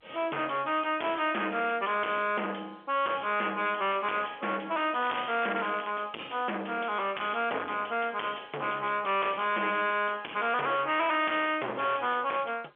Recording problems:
telephone audio; 260 Hz to 3.4 kHz, G.711
distorted audio; soft clipping, signal-to-distortion ratio 5 dB
crackling; at 5 s; loose cable, SNR 13 dB

